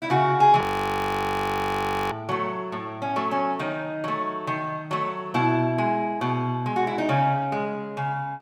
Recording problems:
audio freezing; at 0.5 s for 1.5 s

